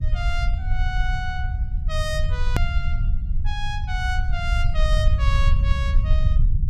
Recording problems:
low-frequency rumble; below 70 Hz, SNR -7 dB
click at an edit; at 2.5 s

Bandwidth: 15.5 kHz